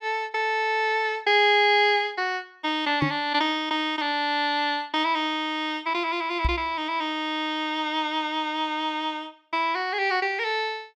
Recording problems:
microphone bump; at 3 s and at 6.5 s; peak +3 dB vs average level

